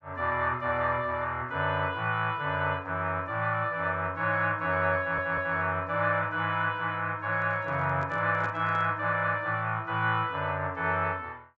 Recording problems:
treble cut off; nothing above 7.9 kHz
audio stuttering; at 5 s
handling noise; from 7.5 to 9 s; peak -11 dB vs average level

